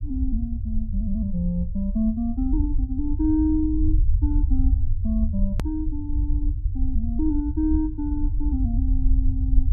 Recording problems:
low-frequency rumble; below 68 Hz, SNR -1 dB
hard cut with a click; at 5.5 s

